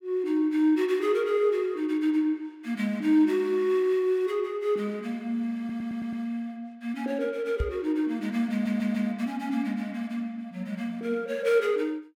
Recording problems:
stutter; at 5.5 s and at 8.5 s
microphone bump; at 7.5 s; peak +1 dB vs average level

